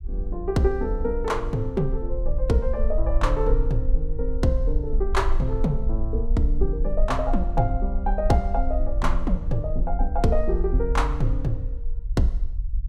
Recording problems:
rumble; below 48 Hz, SNR 1 dB

